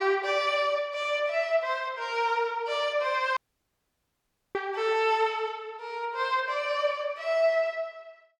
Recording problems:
dropout; at 3.5 s for 1 s

